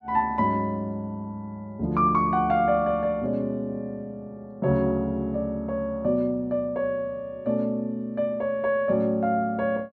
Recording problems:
none

